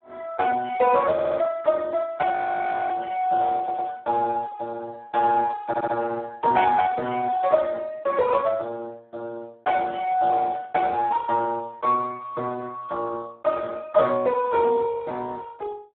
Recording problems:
phone line; 260 Hz to 2.2 kHz, Speex
audio stuttering; at 1 s, at 3.5 s and at 5.5 s
audio freezing; at 2.5 s for 0.5 s

